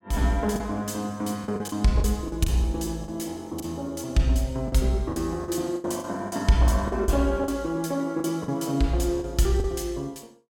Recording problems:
lost packets; 9% of the sound replaced, filled with the last packet

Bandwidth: 17 kHz